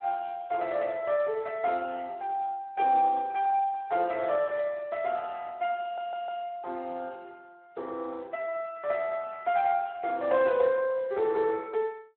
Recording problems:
phone line; 340 Hz to 3.2 kHz, Speex
audio stuttering; at 6 s

